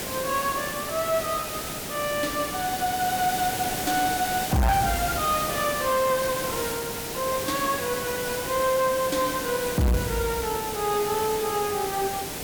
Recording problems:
distorted audio; hard clipping, signal-to-distortion ratio 7 dB
hiss; SNR 4 dB

